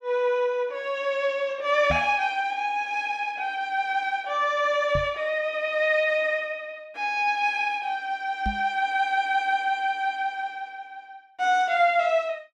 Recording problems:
microphone bump; at 2 s, at 5 s and at 8.5 s; peak -2 dB vs average level

